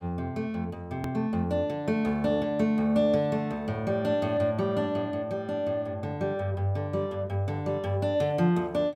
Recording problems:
hard cut with a click; at 1 s

